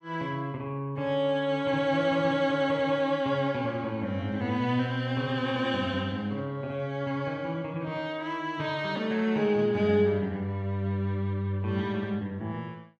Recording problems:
none

